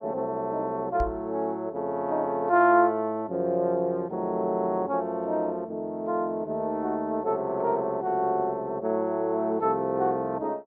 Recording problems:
microphone thump; at 1 s; peak -3 dB vs average level

